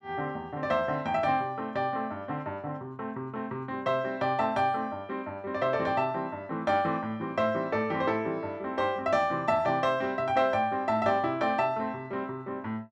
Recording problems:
none

